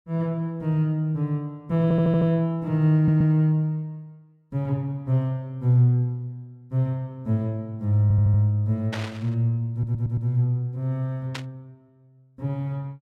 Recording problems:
stutter; 4 times, first at 2 s
burst of static; at 9 s and at 11 s; peak -5 dB vs average level

